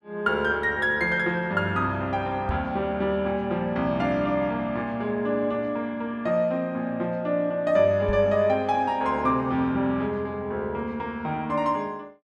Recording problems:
knock on the microphone; at 2.5 s and at 8 s; peak -1 dB vs average level

